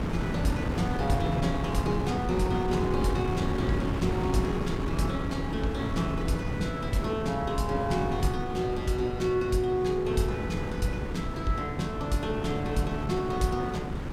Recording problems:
wind noise; below 370 Hz, SNR 2 dB

